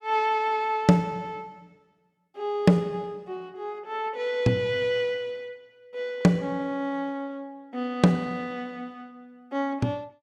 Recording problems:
none

